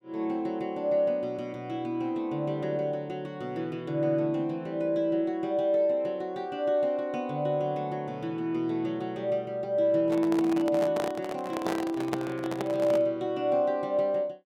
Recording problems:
microphone handling noise; from 10 to 13 s; peak +1 dB vs average level

